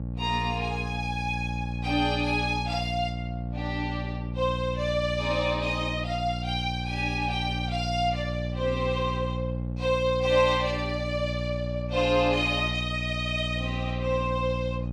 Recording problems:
mains hum; 60 Hz, harmonics up to 600 Hz, SNR 4 dB

